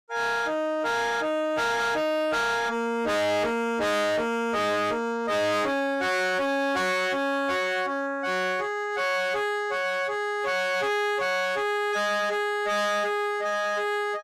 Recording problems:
distortion; hard clipping, signal-to-distortion ratio 6 dB

